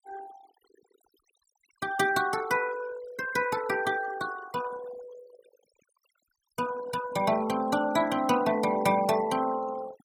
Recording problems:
noise reduction artefacts; signal-to-artefact ratio 16 dB

